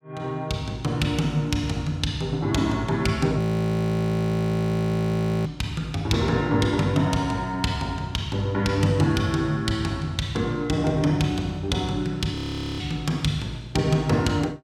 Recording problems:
audio freezing; at 3.5 s for 2 s and at 12 s

